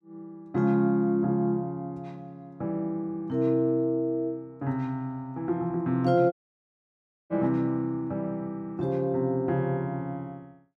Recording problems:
dropout; at 6.5 s for 1 s

